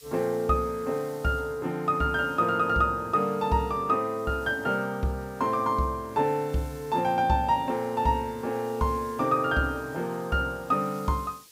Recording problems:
background hiss; SNR 25 dB

